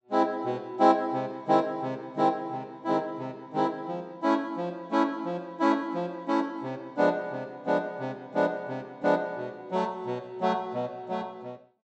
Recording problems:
treble cut off; nothing above 7.9 kHz

